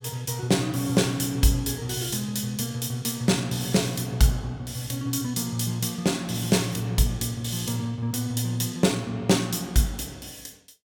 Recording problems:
none

